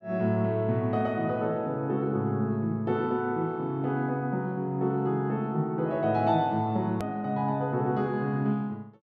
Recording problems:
edit click; at 7 s

